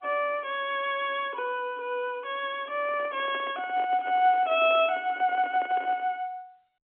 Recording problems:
phone line; 240 Hz to 3.4 kHz, G.711
microphone handling noise; from 2.5 to 6 s; peak -10 dB vs average level

